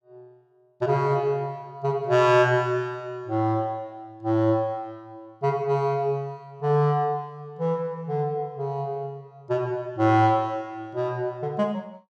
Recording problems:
none

